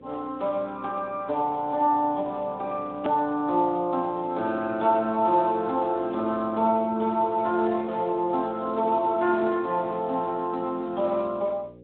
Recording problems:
treble cut off; nothing above 3.8 kHz
lossy codec; MP3, then Speex, log-spectral distance 2 dB
mains hum; 60 Hz, harmonics up to 540 Hz, SNR 24 dB
edit click; at 3 s

